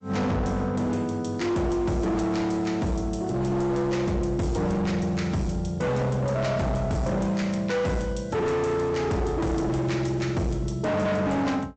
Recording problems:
treble cut off; nothing above 8 kHz
codec artefacts; MP3, log-spectral distance 2 dB
distortion; hard clipping, signal-to-distortion ratio 7 dB

